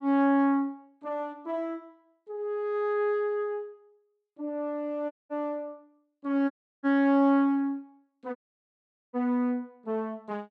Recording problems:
dropout; at 5 s, at 6.5 s and at 8.5 s for 1 s

